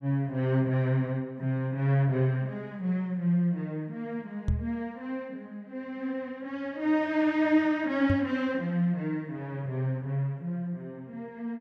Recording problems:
knock on the microphone; at 4.5 s and at 8 s; peak +4 dB vs average level

